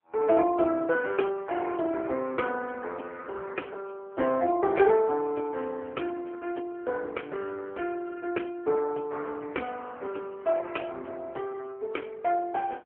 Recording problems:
phone line; 260 Hz to 2.3 kHz, AMR-NB

